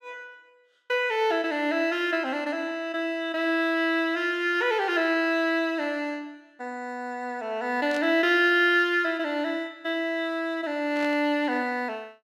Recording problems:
static burst; at 8 s and at 11 s; peak -10 dB vs average level

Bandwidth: 15.5 kHz